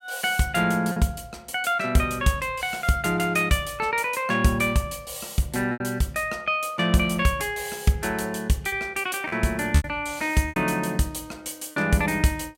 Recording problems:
packet loss; 3% of the sound replaced, filled with repeated pitch periods

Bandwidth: 16 kHz